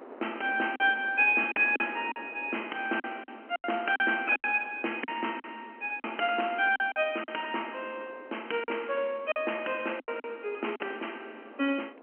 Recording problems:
phone line; 240 Hz to 3.1 kHz, G.711
wind on the microphone; below 840 Hz, SNR 21 dB
packet loss; 8% of the sound replaced, filled with silence

